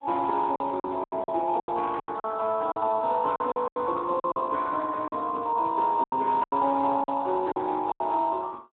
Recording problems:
phone line; 240 Hz to 2.1 kHz, Speex
lost packets; 12% of the sound replaced, filled with silence
crackle; at 2 s; loose cable, SNR 23 dB

